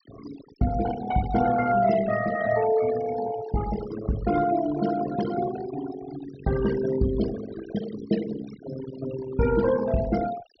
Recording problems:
treble missing; nothing above 5.9 kHz
denoising artefacts; signal-to-artefact ratio 12 dB

